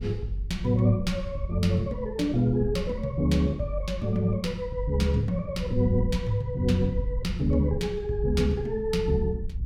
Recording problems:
wind on the microphone; below 80 Hz, SNR 10 dB

